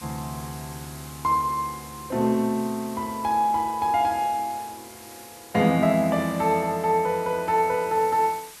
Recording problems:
hiss; SNR 19 dB

